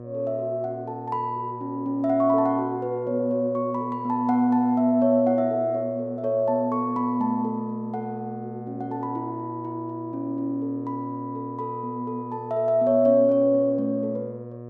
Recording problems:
hum; 60 Hz, harmonics up to 1.2 kHz, SNR 14 dB

